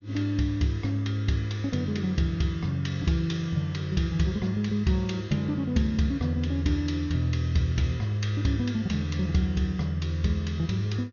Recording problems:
low-pass filter; nothing above 6.7 kHz

